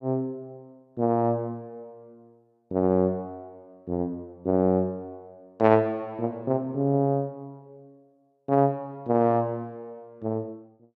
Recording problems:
none

